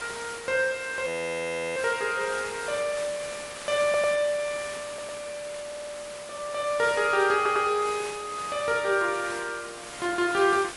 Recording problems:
lossy codec; MP3, log-spectral distance 10 dB, nothing above 10.7 kHz
hiss; slope -2 dB per octave, SNR 12 dB
audio freezing; at 1 s for 0.5 s
audio stuttering; 4 times, first at 4 s

